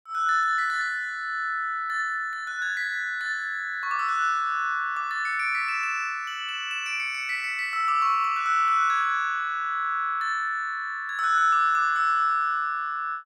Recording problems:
none

